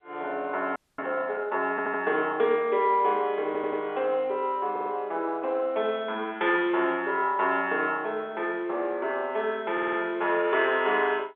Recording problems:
telephone audio; 320 Hz to 3.7 kHz, G.711
audio freezing; at 1 s
stutter; 4 times, first at 1.5 s

